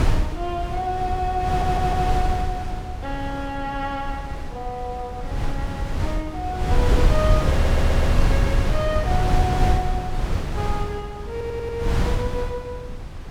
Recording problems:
wind on the microphone; below 130 Hz, SNR -4 dB
audio stuttering; at 1.5 s, at 7.5 s and at 11 s

